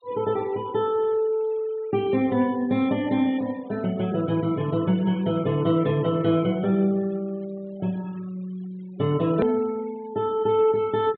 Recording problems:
treble missing; nothing above 4 kHz
denoising artefacts; signal-to-artefact ratio 23 dB
hard cut with a click; at 9.5 s

